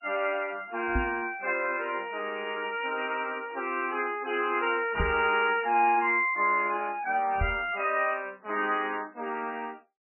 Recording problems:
lossy compression; MP3, log-spectral distance 4 dB, nothing above 2.4 kHz
knock on the microphone; at 1 s, at 5 s and at 7.5 s; peak +3 dB vs average level

